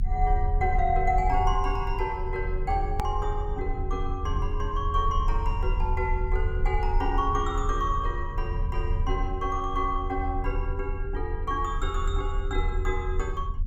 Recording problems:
low-frequency rumble; below 78 Hz, strongest tone 26 Hz, SNR 1 dB
edit click; at 3 s

